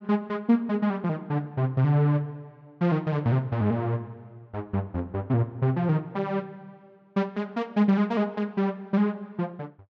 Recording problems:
none

